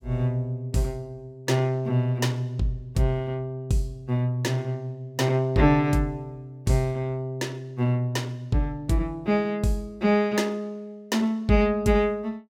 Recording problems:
none

